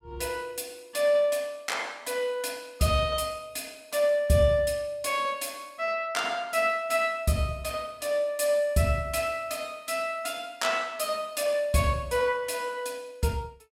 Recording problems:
none

